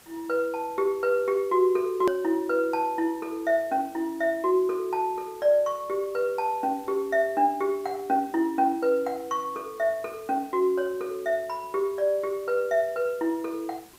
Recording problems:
background hiss; slope -2 dB per octave, SNR 25 dB
hard cut with a click; at 2 s

